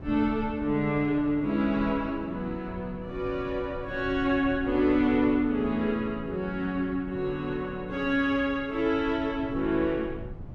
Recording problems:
low-frequency rumble; below 150 Hz, SNR 16 dB

